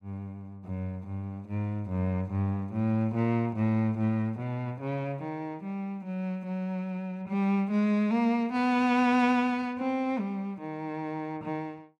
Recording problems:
none

